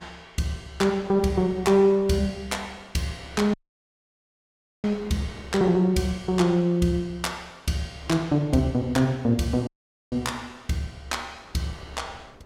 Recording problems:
wind on the microphone; below 980 Hz, SNR 25 dB
dropout; at 3.5 s for 1.5 s and at 9.5 s

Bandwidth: 17 kHz